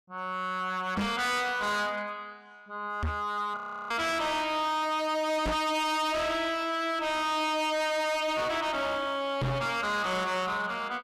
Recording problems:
distorted audio; hard clipping, signal-to-distortion ratio 6 dB
knock on the microphone; 4 times, first at 1 s; peak +3 dB vs average level
frozen audio; at 3.5 s

